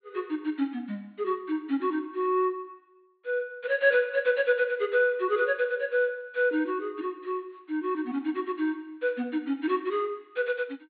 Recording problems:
treble cut off; nothing above 4.5 kHz

